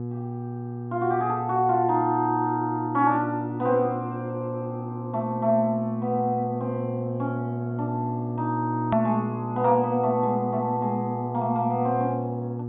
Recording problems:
treble missing; nothing above 3.7 kHz
hum; 60 Hz, harmonics up to 840 Hz, SNR 6 dB
edit click; at 9 s

